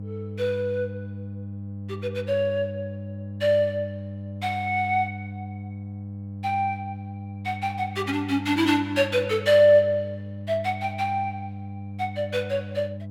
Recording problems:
electrical hum; 50 Hz, harmonics up to 500 Hz, SNR 11 dB

